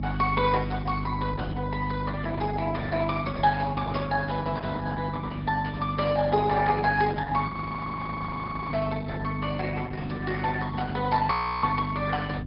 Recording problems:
treble cut off; nothing above 5.2 kHz
lossy compression; Opus, log-spectral distance 4 dB
electrical hum; 50 Hz, harmonics up to 300 Hz, SNR 3 dB
frozen audio; at 7.5 s for 1 s and at 11 s
burst of static; at 11 s; peak -16 dB vs average level

